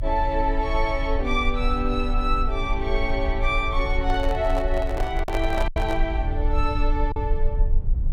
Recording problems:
rumble; below 50 Hz, strongest tone 28 Hz, SNR 2 dB
packet loss; 2% of the sound replaced, filled with silence
microphone handling noise; from 4 to 6 s; peak 0 dB vs average level

